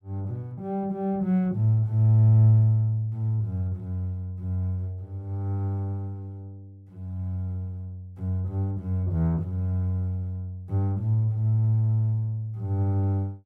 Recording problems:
none

